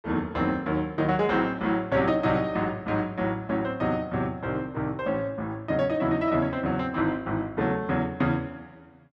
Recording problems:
none

